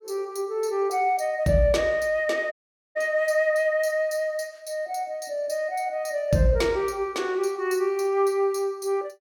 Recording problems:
dropout; at 2.5 s

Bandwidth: 17 kHz